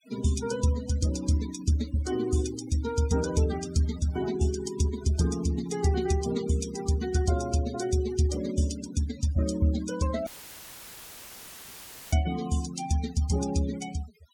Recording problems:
noise reduction artefacts; signal-to-artefact ratio 13 dB
audio cutting out; at 10 s for 2 s; filled with static

